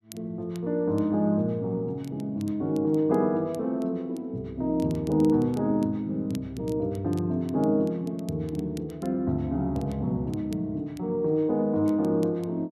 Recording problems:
crackle; vinyl, SNR 27 dB

